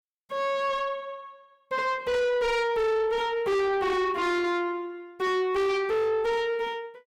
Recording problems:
distortion; soft clipping, signal-to-distortion ratio 7 dB

